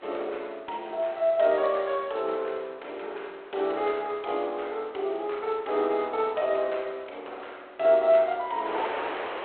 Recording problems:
phone line; 340 Hz to 3.8 kHz, G.726
wind noise; below 1.7 kHz, SNR 14 dB

